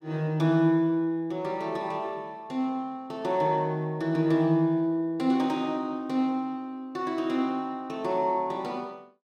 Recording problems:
none

